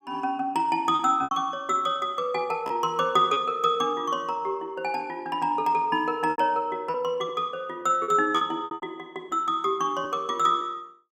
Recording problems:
lost packets; 6% of the sound replaced, filled with repeated pitch periods

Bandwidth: 16 kHz